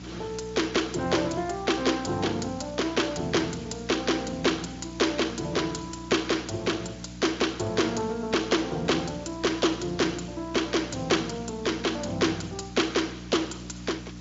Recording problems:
treble cut off; nothing above 7.3 kHz
codec artefacts; Speex, log-spectral distance 10 dB
electrical hum; 60 Hz, harmonics up to 300 Hz, SNR 14 dB
background hiss; slope -1 dB per octave, SNR 21 dB

